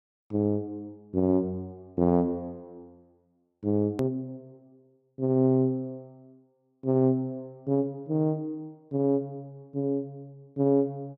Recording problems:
click at an edit; at 4 s

